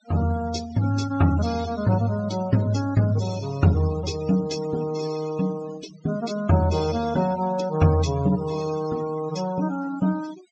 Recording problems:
treble cut off; nothing above 8 kHz
denoising artefacts; signal-to-artefact ratio 17 dB

